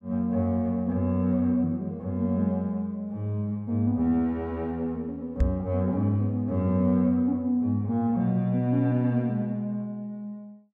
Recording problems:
knock on the microphone; at 5.5 s; peak +6 dB vs average level

